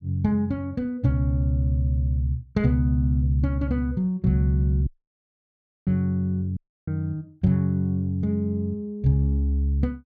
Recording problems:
dropout; at 5 s for 1 s and at 6.5 s

